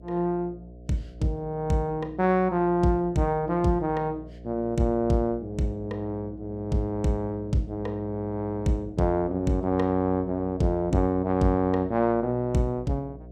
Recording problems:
hum; 60 Hz, harmonics up to 720 Hz, SNR 18 dB

